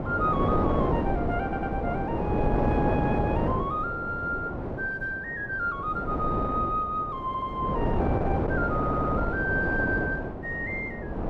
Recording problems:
wind noise; below 570 Hz, SNR -2 dB
stutter; at 1.5 s, at 7.5 s and at 8.5 s

